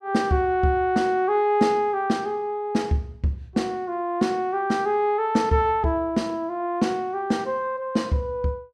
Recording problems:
none

